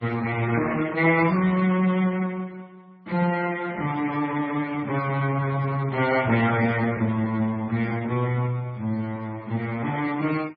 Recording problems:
lossy codec; Speex, then MP3, log-spectral distance 3 dB

